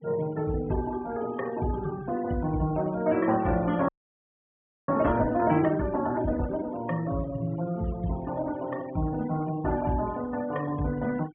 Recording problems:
low-pass filter; nothing above 3.4 kHz
noise reduction artefacts; signal-to-artefact ratio 19 dB
audio freezing; at 4 s for 1 s

